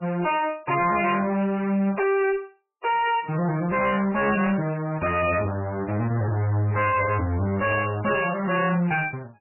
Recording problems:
lossy compression; MP3, log-spectral distance 5 dB, nothing above 2.6 kHz
distorted audio; hard clipping, signal-to-distortion ratio 7 dB

